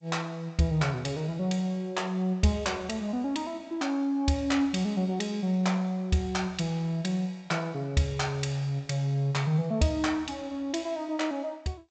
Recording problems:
lossy compression; G.722, log-spectral distance 2 dB, nothing above 7.8 kHz

